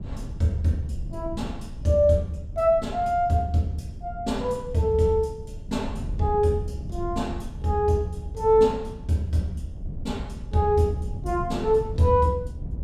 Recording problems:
wind on the microphone; below 120 Hz, SNR 12 dB

